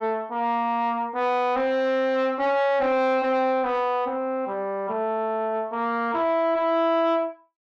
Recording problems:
distortion; soft clipping, signal-to-distortion ratio 11 dB

